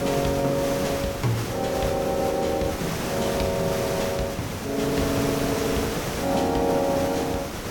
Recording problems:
background hiss; slope -5 dB per octave, SNR 4 dB

